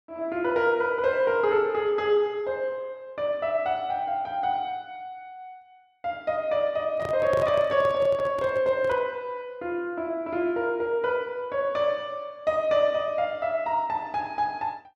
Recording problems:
handling noise; from 7 to 9 s; peak -3 dB vs average level

